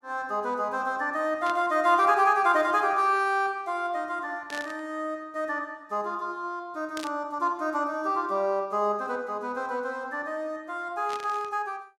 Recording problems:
static burst; 4 times, first at 1.5 s; peak -7 dB vs average level

